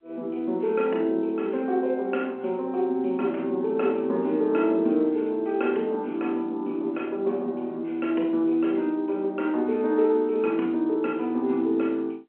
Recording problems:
phone line; 220 Hz to 3.2 kHz, G.711

